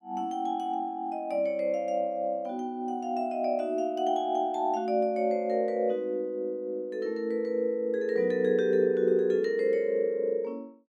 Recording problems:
none

